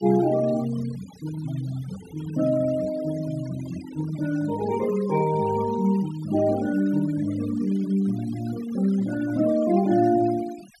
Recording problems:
denoising artefacts; signal-to-artefact ratio 19 dB

